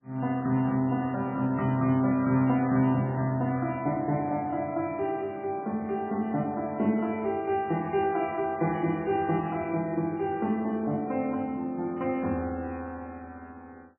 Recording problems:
codec artefacts; MP3, log-spectral distance 2 dB, nothing above 2.8 kHz

